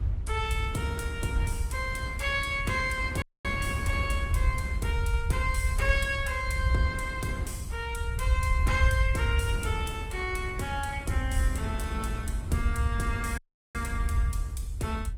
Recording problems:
codec artefacts; Opus, log-spectral distance 2 dB, nothing above 18.5 kHz
rumble; below 92 Hz, SNR 3 dB
wind noise; below 400 Hz, SNR 12 dB
audio cutting out; at 3 s and at 13 s

